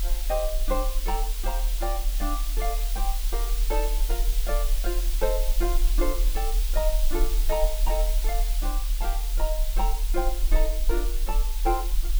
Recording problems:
background hiss; slope +2 dB per octave, SNR 3 dB
rumble; below 40 Hz, strongest tone 38 Hz, SNR -4 dB

